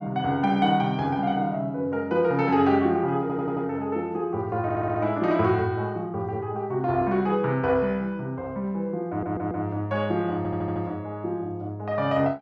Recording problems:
stutter; 4 times, first at 3 s

